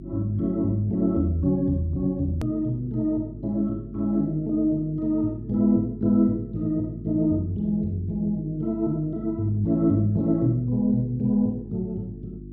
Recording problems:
hum; 50 Hz, harmonics up to 350 Hz, SNR 15 dB
click at an edit; at 2.5 s

